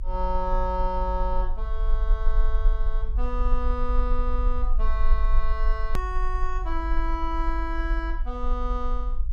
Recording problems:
rumble; below 46 Hz, strongest tone 20 Hz, SNR -3 dB
edit click; at 6 s

